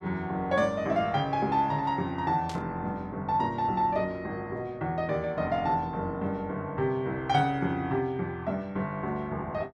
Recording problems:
burst of static; at 2.5 s; peak -9 dB vs average level

